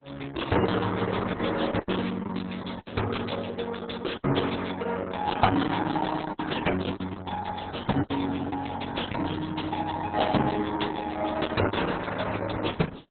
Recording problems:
codec artefacts; MP3, then Opus, log-spectral distance 8 dB, nothing above 4 kHz
lost packets; 5% of the sound replaced, filled with the last packet

